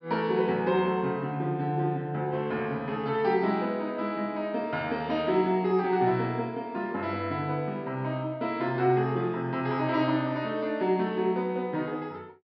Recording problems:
low-pass filter; nothing above 5.5 kHz

